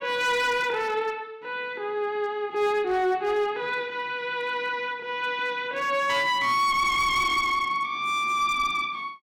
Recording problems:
distorted audio; hard clipping, signal-to-distortion ratio 11 dB

